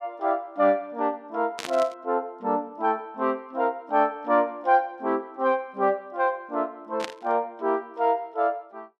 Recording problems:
static burst; at 1.5 s and at 7 s; peak -3 dB vs average level

